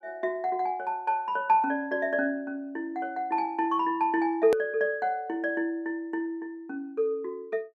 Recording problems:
click at an edit; at 4.5 s

